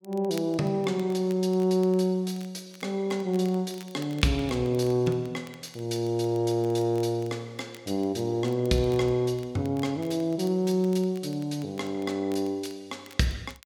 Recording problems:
crackle; vinyl, SNR 25 dB

